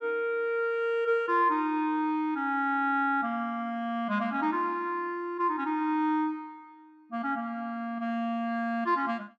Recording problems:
none

